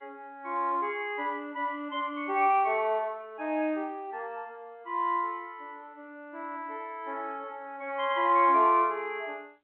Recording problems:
telephone audio; 240 Hz to 3.3 kHz, G.711

